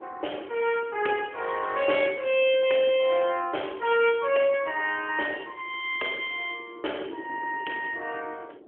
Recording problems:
telephone audio; 300 Hz to 3.3 kHz, AMR-NB
wind noise; below 470 Hz, SNR 21 dB

